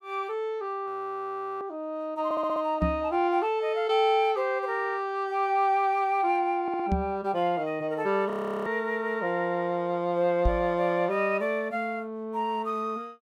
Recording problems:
frozen audio; at 1 s for 0.5 s and at 8.5 s
stutter; at 2.5 s and at 6.5 s
knock on the microphone; at 3 s, at 7 s and at 10 s; peak +4 dB vs average level

